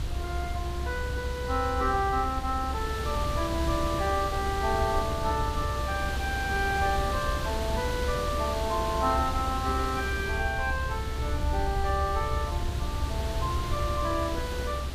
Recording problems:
background hiss; slope -4 dB per octave, SNR 7 dB
rumble; below 84 Hz, strongest tone 66 Hz, SNR 4 dB

